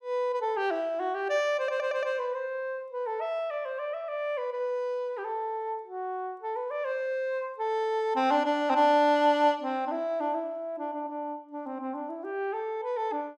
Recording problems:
stutter; at 1.5 s

